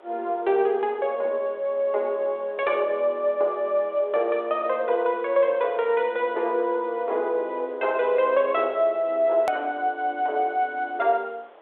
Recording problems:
telephone audio; 320 Hz to 3.7 kHz, G.726
background hiss; SNR 26 dB
edit click; at 9.5 s

